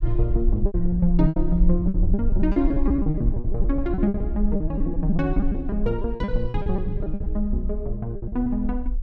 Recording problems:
rumble; below 48 Hz, SNR 3 dB
lost packets; 17% of the sound replaced, filled with repeated pitch periods

